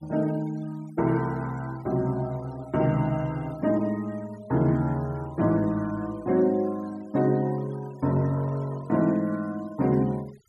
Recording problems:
noise reduction artefacts; signal-to-artefact ratio 24 dB

